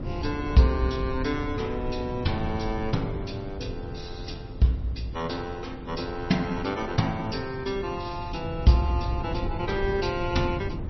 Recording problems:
lossy compression; MP3, log-spectral distance 3 dB, nothing above 5.8 kHz
rumble; below 160 Hz, SNR 8 dB

